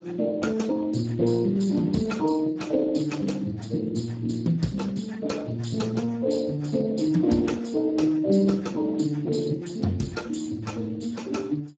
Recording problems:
lossy compression; Speex, then Speex, log-spectral distance 4 dB, nothing above 7.3 kHz

